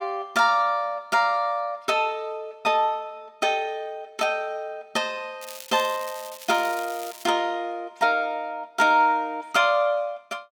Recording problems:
crackling; from 5.5 to 7.5 s; loose cable, SNR 16 dB

